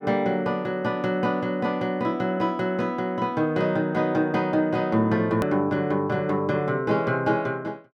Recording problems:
edit click; at 5.5 s

